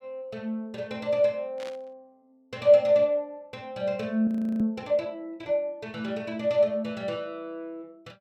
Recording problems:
static burst; at 1.5 s; peak -13 dB vs average level
frozen audio; at 4.5 s

